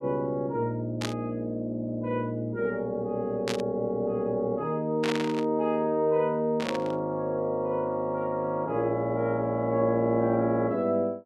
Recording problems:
burst of static; 4 times, first at 1 s; peak 0 dB vs average level

